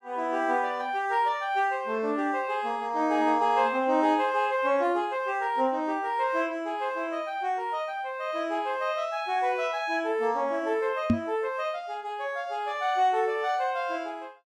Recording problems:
microphone thump; at 11 s; peak +8 dB vs average level

